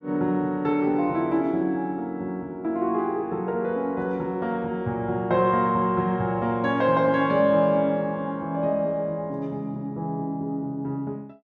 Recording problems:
none

